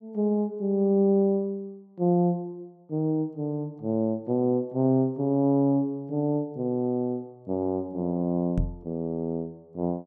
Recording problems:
microphone bump; at 8.5 s; peak +2 dB vs average level

